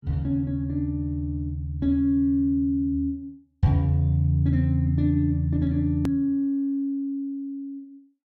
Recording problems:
edit click; at 6 s

